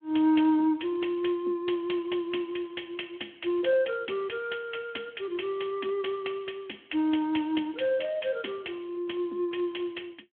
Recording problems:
phone line; 240 Hz to 3.3 kHz, Speex

